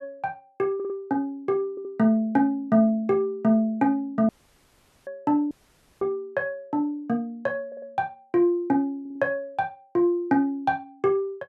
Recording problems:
stutter; 4 times, first at 1 s
audio cutting out; at 4.5 s for 1 s and at 5.5 s for 0.5 s

